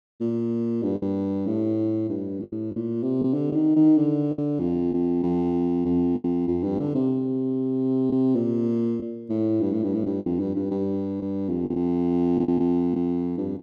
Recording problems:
lost packets; 5% of the sound replaced, filled with the last packet

